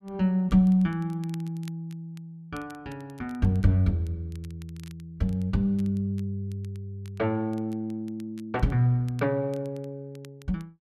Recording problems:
crackle; vinyl, SNR 29 dB

